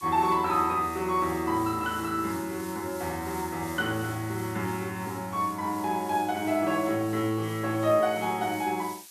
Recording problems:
hiss; slope +3 dB per octave, SNR 17 dB

